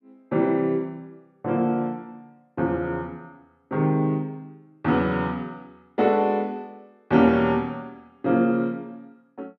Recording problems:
none

